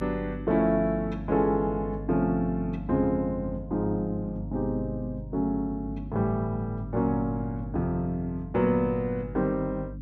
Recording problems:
hum; 50 Hz, harmonics up to 300 Hz, SNR 10 dB

